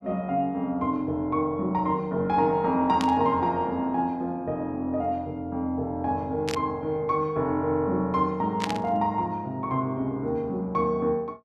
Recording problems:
burst of static; at 3 s, at 6.5 s and at 8.5 s; peak 0 dB vs average level

